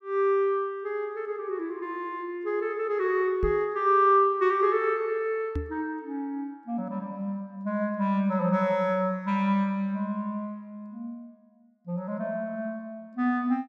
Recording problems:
microphone thump; at 3.5 s and at 5.5 s; peak 0 dB vs average level

